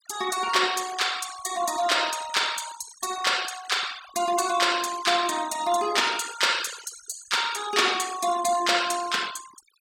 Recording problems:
noise reduction artefacts; signal-to-artefact ratio 14 dB

